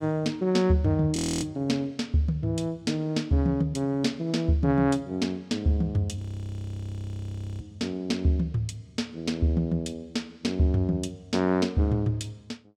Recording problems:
audio freezing; at 1 s and at 6 s for 1.5 s

